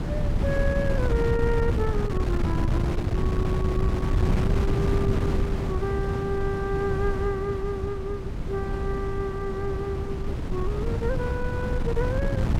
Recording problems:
electrical hum; 60 Hz, harmonics up to 480 Hz, SNR 24 dB
wind noise; below 180 Hz, SNR -3 dB

